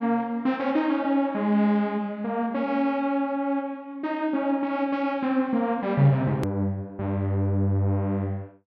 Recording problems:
click at an edit; at 6.5 s

